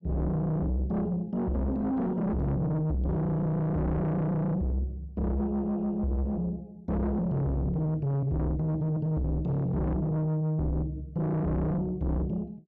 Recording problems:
distorted audio; soft clipping, signal-to-distortion ratio 6 dB

